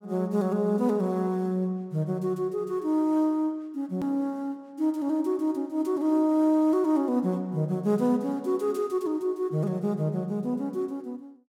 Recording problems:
hard cut with a click; at 4 s

